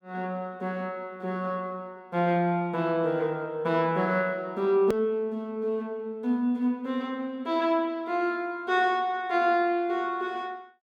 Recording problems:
edit click; at 5 s

